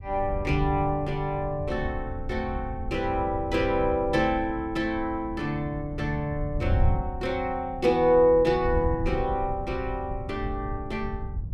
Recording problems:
wind noise; below 100 Hz, SNR 8 dB

